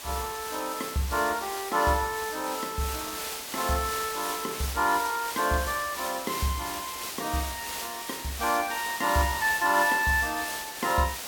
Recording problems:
background hiss; slope -1 dB per octave, SNR 6 dB

